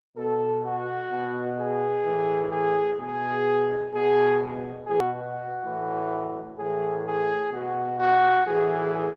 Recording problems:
lossy compression; Opus, log-spectral distance 2 dB, nothing above 13.1 kHz
hard cut with a click; at 5 s

